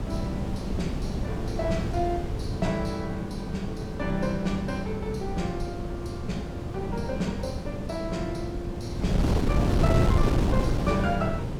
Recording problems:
hum; 50 Hz, harmonics up to 550 Hz, SNR 15 dB
wind on the microphone; below 270 Hz, SNR -2 dB

